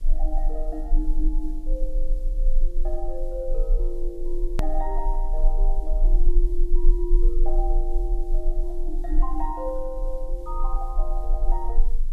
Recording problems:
hum; 60 Hz, harmonics up to 1.2 kHz, SNR 23 dB
background hiss; slope +2 dB per octave, SNR 27 dB
rumble; below 32 Hz, strongest tone 20 Hz, SNR -7 dB
hard cut with a click; at 4.5 s

